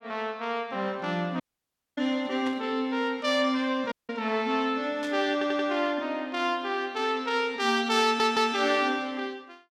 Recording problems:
dropout; at 1.5 s for 0.5 s and at 4 s
burst of static; at 2.5 s and at 5 s; peak -10 dB vs average level
audio stuttering; at 5.5 s and at 8 s

